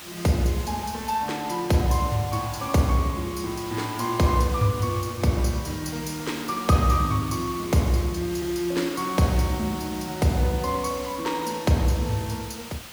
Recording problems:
background hiss; slope -1 dB per octave, SNR 14 dB

